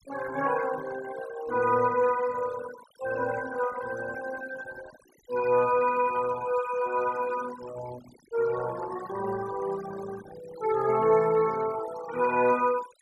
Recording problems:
denoising artefacts; signal-to-artefact ratio 16 dB

